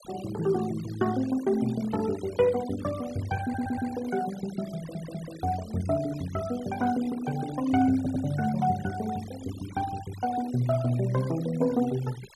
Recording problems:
noise reduction artefacts; signal-to-artefact ratio 18 dB
audio stuttering; at 3.5 s, at 5 s and at 8 s

